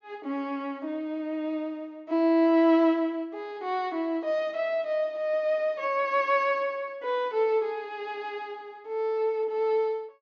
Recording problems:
treble missing; nothing above 6.7 kHz

